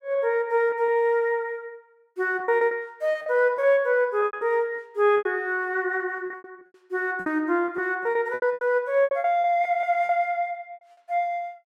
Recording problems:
packet loss; 13% of the sound replaced, filled with repeated pitch periods

